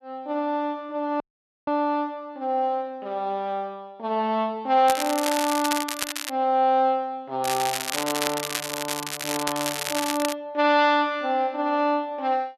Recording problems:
audio cutting out; at 1 s
crackling; from 5 to 6.5 s and from 7.5 to 10 s; loose cable, SNR 4 dB

